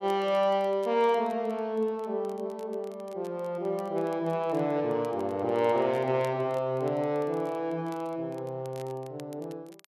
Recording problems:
crackling; vinyl, SNR 28 dB

